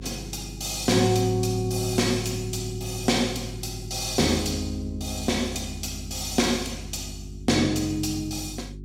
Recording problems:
hum; 50 Hz, harmonics up to 400 Hz, SNR 13 dB

